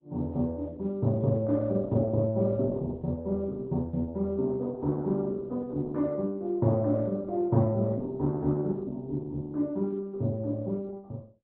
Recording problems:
lossy compression; Opus, log-spectral distance 2 dB

